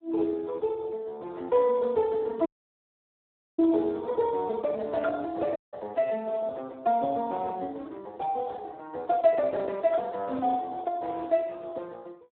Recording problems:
telephone audio; 260 Hz to 3.5 kHz, Speex
audio cutting out; at 2.5 s for 1 s and at 5.5 s

